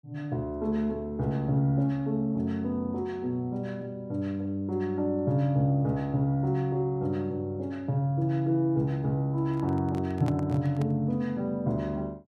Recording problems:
handling noise; from 9.5 to 11 s; peak -6 dB vs average level

